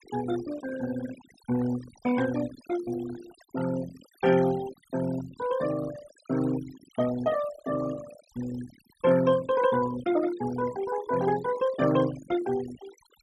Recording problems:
denoising artefacts; signal-to-artefact ratio 14 dB

